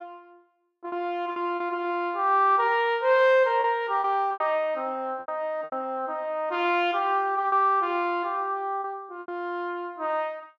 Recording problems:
lost packets; 6% of the sound replaced, filled with repeated pitch periods

